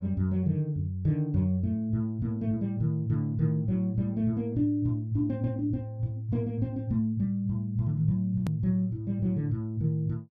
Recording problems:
hard cut with a click; at 8.5 s

